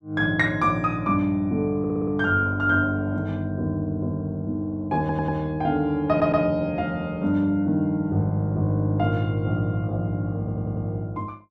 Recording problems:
audio stuttering; 4 times, first at 2 s

